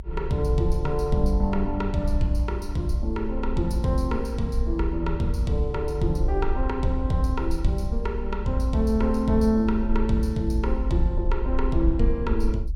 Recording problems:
low-frequency rumble; below 58 Hz, strongest tone 24 Hz, SNR 5 dB

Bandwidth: 16.5 kHz